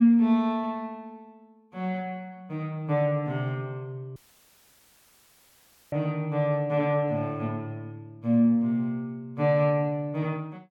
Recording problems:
dropout; at 4 s for 2 s

